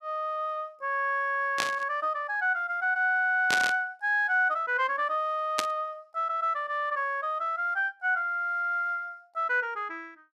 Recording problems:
burst of static; at 1.5 s, at 3.5 s and at 5.5 s; peak +4 dB vs average level

